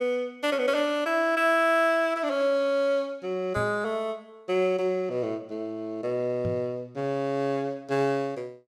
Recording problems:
microphone bump; at 3.5 s and at 6.5 s; peak -3 dB vs average level

